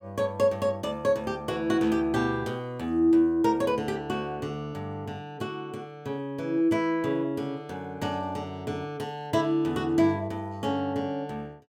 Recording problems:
none

